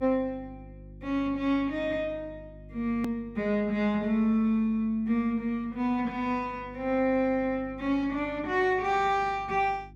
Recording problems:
electrical hum; 50 Hz, harmonics up to 350 Hz, SNR 21 dB
edit click; at 3 s

